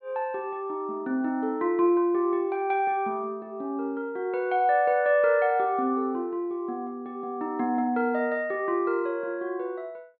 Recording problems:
treble cut off; nothing above 4.3 kHz

